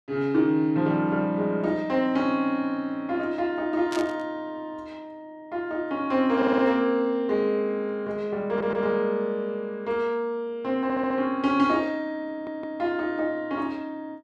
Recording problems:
burst of static; at 4 s; peak -6 dB vs average level
audio stuttering; 4 times, first at 6.5 s

